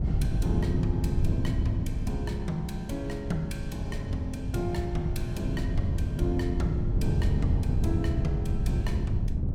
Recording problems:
wind noise; below 130 Hz, SNR -3 dB

